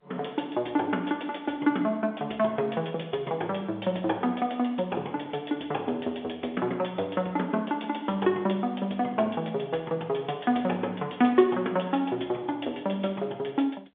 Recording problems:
phone line; 220 Hz to 3.6 kHz, G.711

